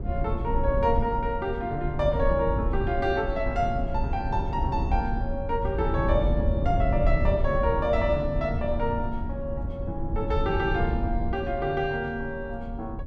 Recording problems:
low-frequency rumble; below 110 Hz, SNR 2 dB

